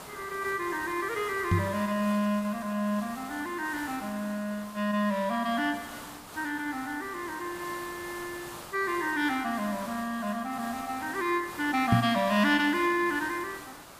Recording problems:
hiss; SNR 14 dB
knock on the microphone; at 1.5 s and at 12 s; peak +9 dB vs average level

